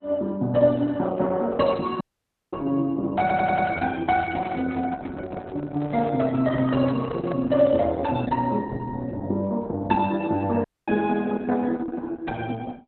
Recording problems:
codec artefacts; Opus, log-spectral distance 3 dB, nothing above 4 kHz
audio cutting out; at 2 s for 0.5 s and at 11 s
audio stuttering; at 3 s
handling noise; from 4.5 to 8 s; peak -9 dB vs average level

